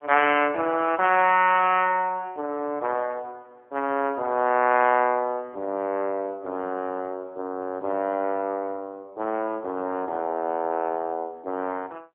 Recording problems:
phone line; 240 Hz to 3.3 kHz, AMR-NB

